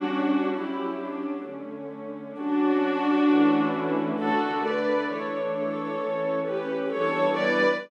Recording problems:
none

